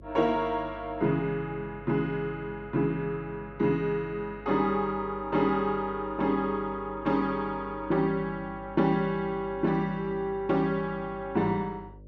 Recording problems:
mains hum; 50 Hz, harmonics up to 600 Hz, SNR 20 dB

